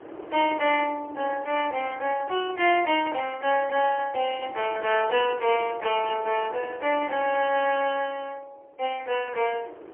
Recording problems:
telephone audio; 300 Hz to 3.2 kHz, AMR-NB, then MP3
wind noise; below 680 Hz, SNR 18 dB

